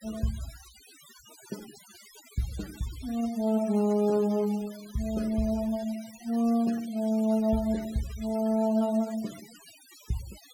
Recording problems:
denoising artefacts; signal-to-artefact ratio 18 dB

